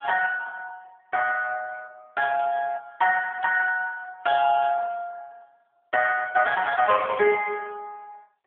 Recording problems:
telephone audio; 260 Hz to 3.3 kHz, AMR-NB

